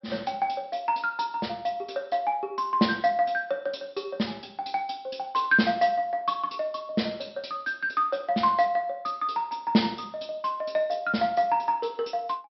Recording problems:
treble missing; nothing above 5.5 kHz

